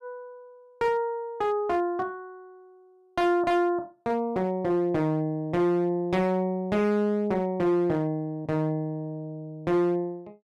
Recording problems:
distortion; hard clipping, signal-to-distortion ratio 11 dB

